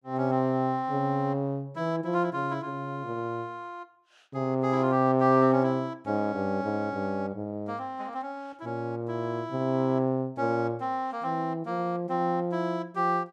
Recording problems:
none

